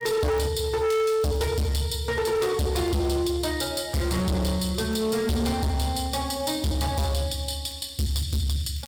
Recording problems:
distortion; hard clipping, signal-to-distortion ratio 6 dB
crackle; vinyl, SNR 29 dB

